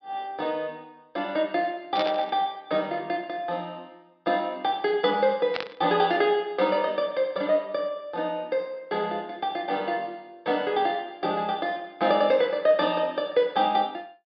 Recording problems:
low-pass filter; nothing above 5.5 kHz
burst of static; at 2 s and at 5.5 s; peak -1 dB vs average level

